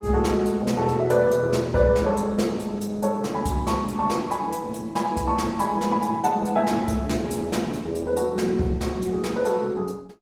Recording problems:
lossy codec; Opus, log-spectral distance 3 dB, nothing above 19 kHz

